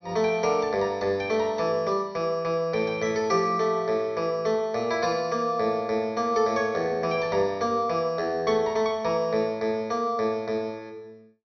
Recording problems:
low-pass filter; nothing above 6.1 kHz

